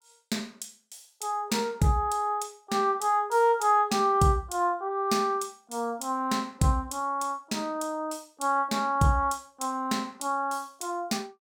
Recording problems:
none

